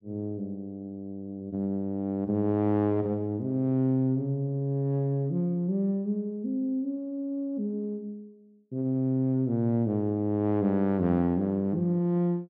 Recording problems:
none

